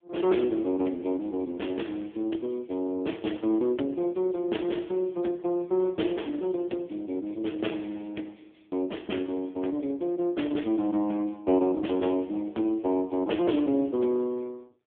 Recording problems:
phone line; 220 Hz to 3.5 kHz, AMR-NB

